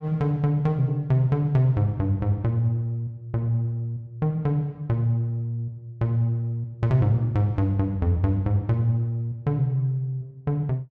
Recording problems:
none

